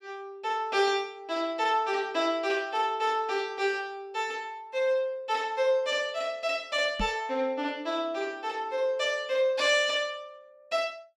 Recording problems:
microphone thump; at 7 s; peak -2 dB vs average level

